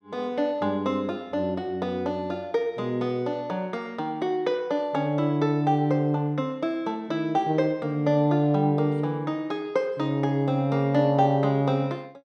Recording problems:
none

